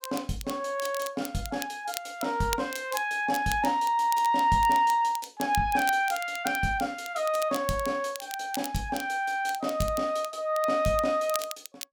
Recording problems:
crackling; vinyl, SNR 13 dB

